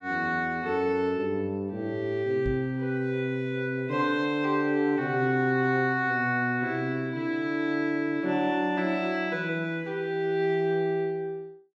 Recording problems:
microphone bump; at 2.5 s; peak -4 dB vs average level

